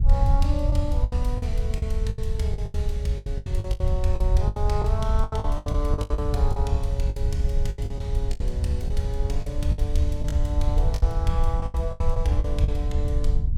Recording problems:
low-frequency rumble; below 74 Hz, SNR -3 dB
lost packets; 15% of the sound replaced, filled with the last packet

